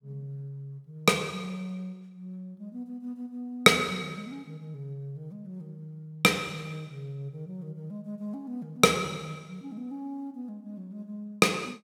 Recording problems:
none

